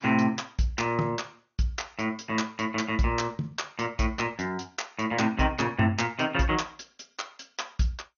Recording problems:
lossy codec; MP2, log-spectral distance 5 dB, nothing above 6.7 kHz

